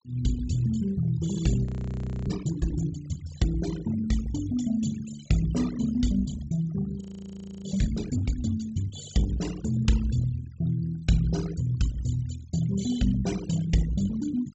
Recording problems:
low-pass filter; nothing above 8 kHz
noise reduction artefacts; signal-to-artefact ratio 15 dB
frozen audio; at 1.5 s for 0.5 s and at 7 s for 0.5 s

